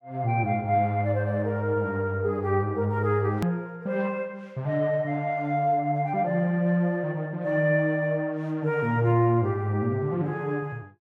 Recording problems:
edit click; at 3.5 s

